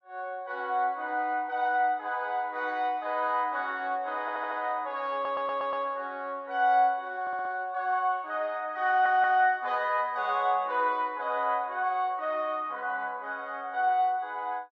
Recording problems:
stutter; 4 times, first at 4 s

